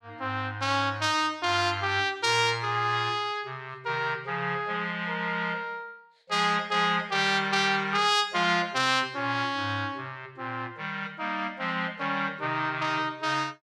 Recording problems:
none

